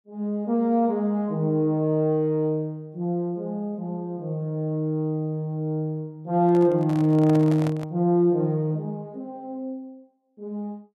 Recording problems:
handling noise; from 6.5 to 8 s; peak -6 dB vs average level

